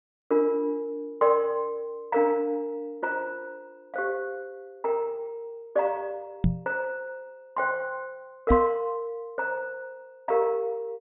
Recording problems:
low-pass filter; nothing above 4 kHz
microphone bump; at 6.5 s and at 8.5 s; peak +8 dB vs average level

